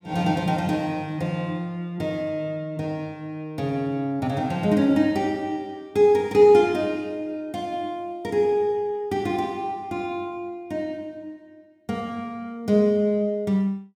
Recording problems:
none

